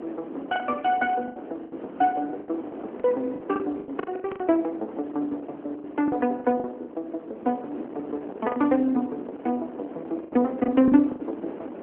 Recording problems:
phone line; 220 Hz to 3.7 kHz, AMR-NB
wind noise; below 580 Hz, SNR 12 dB
packet loss; 10% of the sound replaced, filled with the last packet

